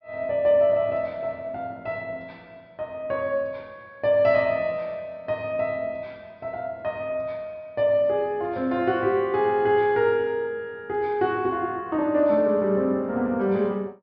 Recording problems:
treble cut off; nothing above 5.7 kHz

